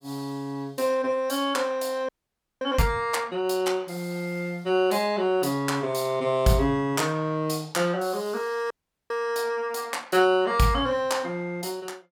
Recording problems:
audio freezing; at 2 s for 0.5 s and at 8.5 s

